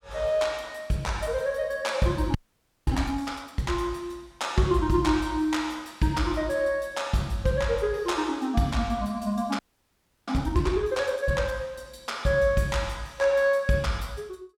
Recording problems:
frozen audio; at 2.5 s for 0.5 s and at 9.5 s for 0.5 s

